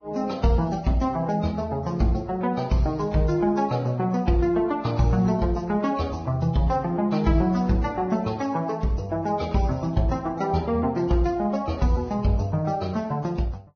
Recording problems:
codec artefacts; Vorbis, log-spectral distance 2 dB, nothing above 5.8 kHz

